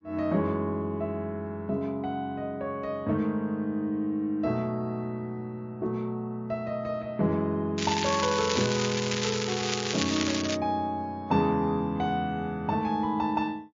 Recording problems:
lossy codec; MP3, log-spectral distance 4 dB, nothing above 6.3 kHz
crackling; from 8 to 11 s; loose cable, SNR 2 dB

